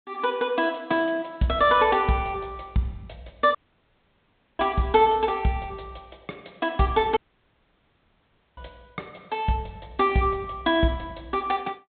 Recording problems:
low-pass filter; nothing above 4 kHz
audio cutting out; at 3.5 s for 1 s and at 7 s for 1.5 s

